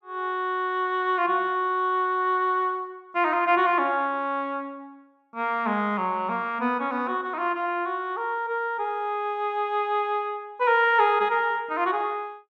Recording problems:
none

